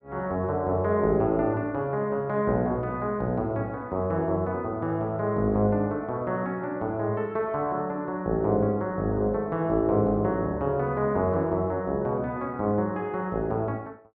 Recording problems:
none

